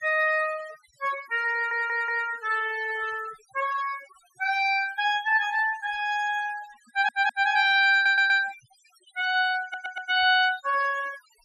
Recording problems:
denoising artefacts; signal-to-artefact ratio 18 dB
audio stuttering; 4 times, first at 1.5 s

